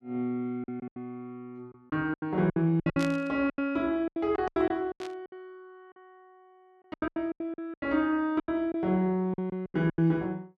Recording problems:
packet loss; 17% of the sound replaced, filled with silence
burst of static; at 3 s and at 5 s; peak -5 dB vs average level

